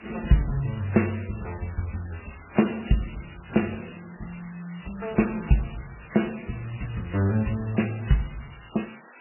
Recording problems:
lossy codec; Vorbis, then MP3, log-spectral distance 18 dB, nothing above 2.9 kHz
background hiss; SNR 20 dB

